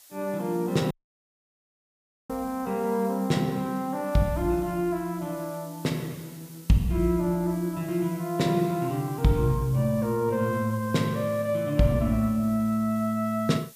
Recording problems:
background hiss; SNR 21 dB
dropout; at 1 s for 1.5 s

